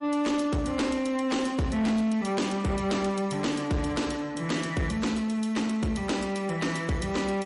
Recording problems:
lossy compression; MP3, log-spectral distance 3 dB, nothing above 10.4 kHz
distortion; soft clipping, signal-to-distortion ratio 12 dB

